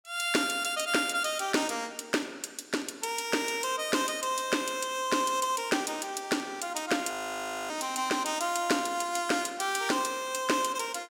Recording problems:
frozen audio; at 7 s for 0.5 s

